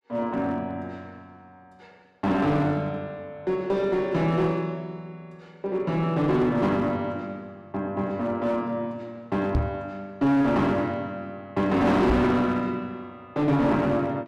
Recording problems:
distorted audio; hard clipping, uneven, signal-to-distortion ratio 9 dB
microphone thump; at 9.5 s and at 12 s; peak +4 dB vs average level

